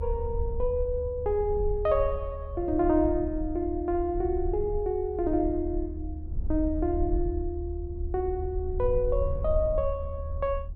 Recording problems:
low-frequency rumble; below 76 Hz, SNR 6 dB

